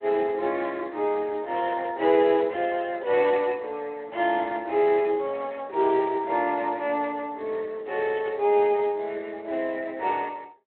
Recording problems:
phone line; 320 Hz to 3.4 kHz, Speex

